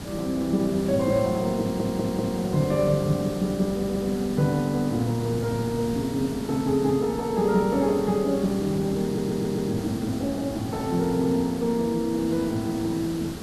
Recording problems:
hiss; SNR 10 dB
audio stuttering; at 1.5 s, at 3.5 s and at 9 s

